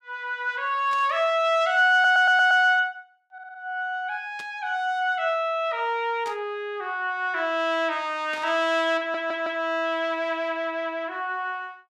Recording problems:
burst of static; 4 times, first at 1 s; peak -12 dB vs average level
audio stuttering; at 2 s, at 3.5 s and at 9 s

